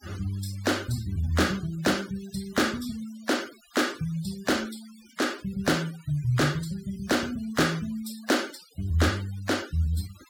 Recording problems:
denoising artefacts; signal-to-artefact ratio 17 dB

